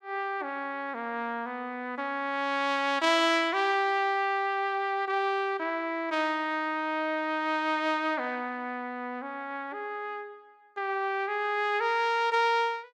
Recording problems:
none

